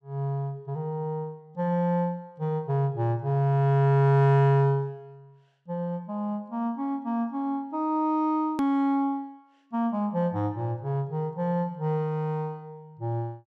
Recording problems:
edit click; at 8.5 s

